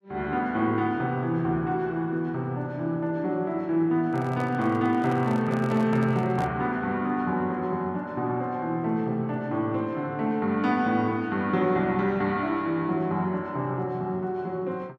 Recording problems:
handling noise; from 4 to 6.5 s; peak -6 dB vs average level

